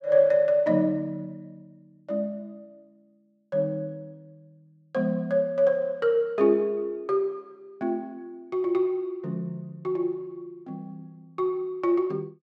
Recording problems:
none

